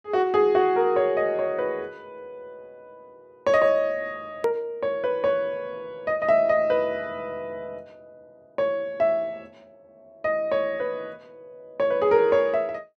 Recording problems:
click at an edit; at 4.5 s

